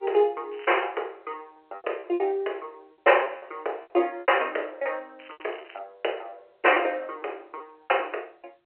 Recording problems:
phone line; 320 Hz to 3.1 kHz, G.711
lost packets; 9% of the sound replaced, filled with repeated pitch periods
crackle; at 0.5 s and at 5 s; loose cable, SNR 21 dB

